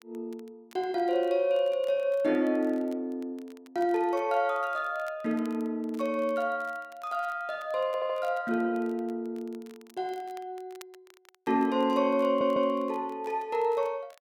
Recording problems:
crackling; vinyl, SNR 29 dB
audio stuttering; at 8 s and at 12 s

